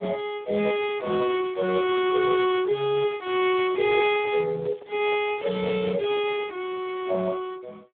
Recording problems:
telephone audio; 220 Hz to 3.7 kHz, Speex
crackle; from 1 to 3 s and from 3 to 5.5 s; loose cable, SNR 27 dB
handling noise; from 4.5 to 6.5 s; peak -8 dB vs average level

